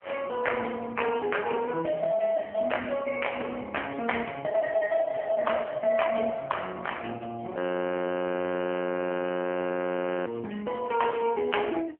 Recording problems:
phone line; 260 Hz to 3.1 kHz, AMR-NB
frozen audio; at 7.5 s for 2.5 s

